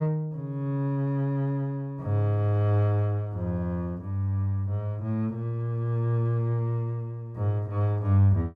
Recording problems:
none

